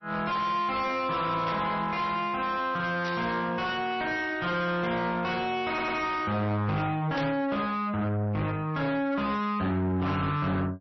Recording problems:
lossy compression; MP3, log-spectral distance 2 dB, nothing above 5.8 kHz
distortion; soft clipping, signal-to-distortion ratio 7 dB
static burst; at 1.5 s, at 3 s and at 7 s; peak -5 dB vs average level
stutter; at 5.5 s

